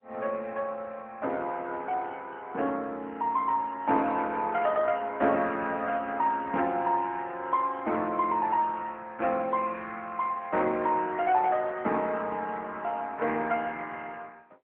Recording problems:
phone line; 240 Hz to 3.1 kHz, AMR-NB

